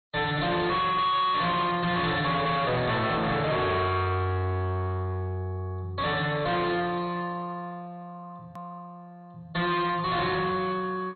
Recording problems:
lossy compression; MP2, log-spectral distance 4 dB, nothing above 4.2 kHz
distorted audio; hard clipping, signal-to-distortion ratio 7 dB
edit click; at 8.5 s

